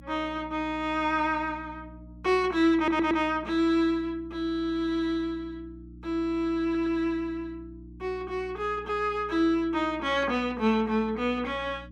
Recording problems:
hum; 60 Hz, harmonics up to 300 Hz, SNR 20 dB
stutter; at 3 s and at 6.5 s

